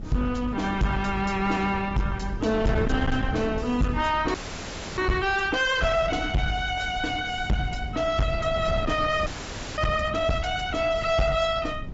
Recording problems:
treble cut off; nothing above 7.6 kHz
codec artefacts; Opus, log-spectral distance 3 dB
distortion; soft clipping, signal-to-distortion ratio 6 dB
wind on the microphone; below 180 Hz, SNR 10 dB
frozen audio; at 4.5 s for 0.5 s and at 9.5 s for 0.5 s

